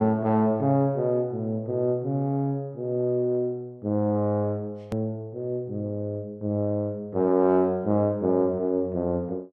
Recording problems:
hard cut with a click; at 5 s

